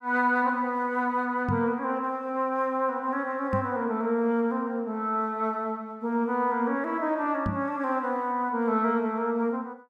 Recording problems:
microphone bump; at 1.5 s, at 3.5 s and at 7.5 s; peak +2 dB vs average level

